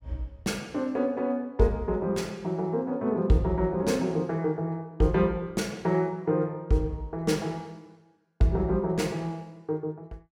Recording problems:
none

